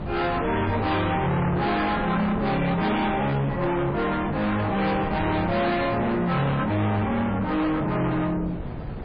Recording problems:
codec artefacts; MP3, log-spectral distance 3 dB, nothing above 4.6 kHz
distorted audio; soft clipping, signal-to-distortion ratio 7 dB
wind noise; below 590 Hz, SNR 10 dB

